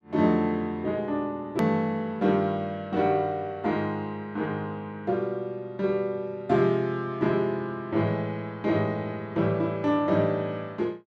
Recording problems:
edit click; at 1.5 s

